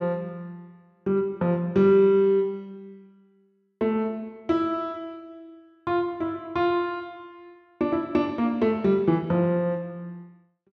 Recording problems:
none

